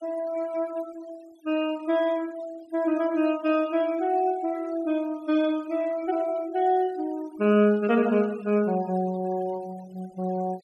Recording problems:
denoising artefacts; signal-to-artefact ratio 23 dB

